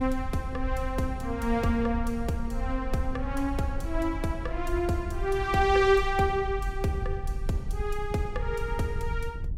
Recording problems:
wind noise; below 66 Hz, SNR 6 dB

